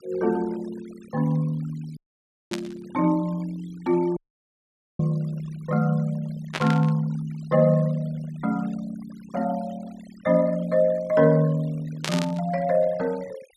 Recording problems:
noise reduction artefacts; signal-to-artefact ratio 24 dB
dropout; at 2 s for 0.5 s and at 4 s for 1 s
static burst; at 2.5 s, at 6.5 s and at 12 s; peak 0 dB vs average level

